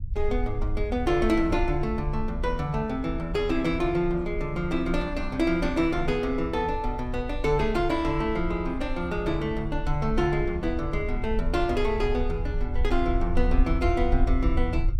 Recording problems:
low-frequency rumble; below 60 Hz, SNR 6 dB

